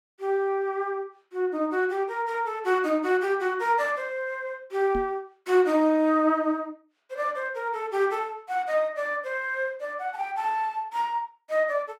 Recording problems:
microphone bump; at 5 s; peak -4 dB vs average level

